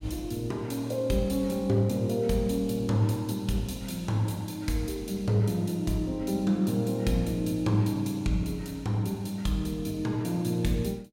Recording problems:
none

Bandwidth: 16 kHz